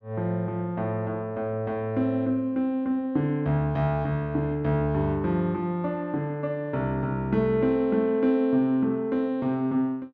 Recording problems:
none

